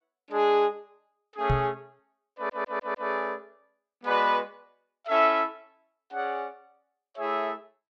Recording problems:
microphone thump; at 1.5 s; peak +4 dB vs average level
audio stuttering; at 2.5 s

